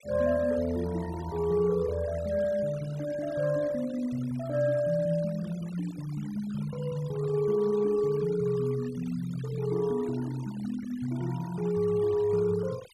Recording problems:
noise reduction artefacts; signal-to-artefact ratio 21 dB

